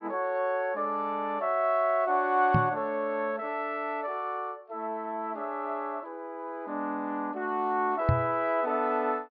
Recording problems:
treble cut off; nothing above 5.5 kHz
microphone thump; at 2.5 s and at 8 s; peak +7 dB vs average level

